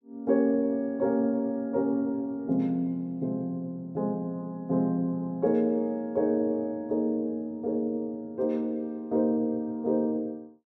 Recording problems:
none

